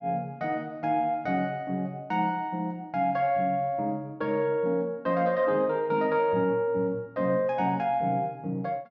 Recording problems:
none

